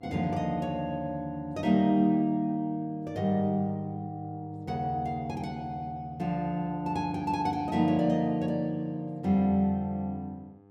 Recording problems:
hum; 50 Hz, harmonics up to 1.3 kHz, SNR 27 dB

